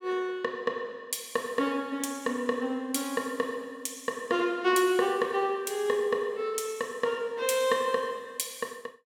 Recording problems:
none

